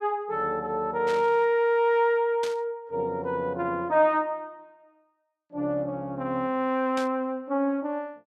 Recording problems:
static burst; at 1 s, at 2.5 s and at 7 s; peak -7 dB vs average level

